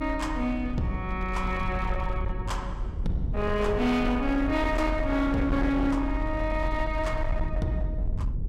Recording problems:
distortion; hard clipping, signal-to-distortion ratio 10 dB
rumble; below 74 Hz, strongest tone 42 Hz, SNR 5 dB
wind noise; below 310 Hz, SNR 15 dB

